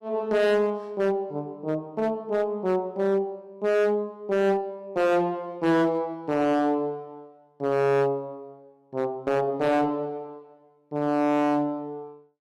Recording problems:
distortion; hard clipping, signal-to-distortion ratio 8 dB

